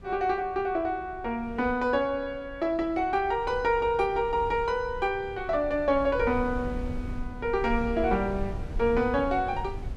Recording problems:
wind noise; below 90 Hz, SNR 13 dB

